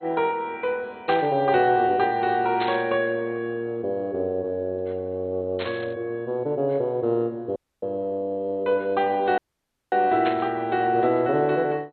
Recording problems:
codec artefacts; MP2, log-spectral distance 2 dB, nothing above 3.8 kHz
static burst; 4 times, first at 1 s; peak -3 dB vs average level
audio cutting out; at 7.5 s and at 9.5 s for 0.5 s

